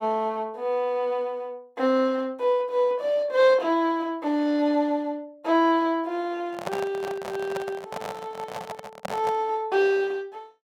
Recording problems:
handling noise; from 6.5 to 9.5 s; peak -2 dB vs average level

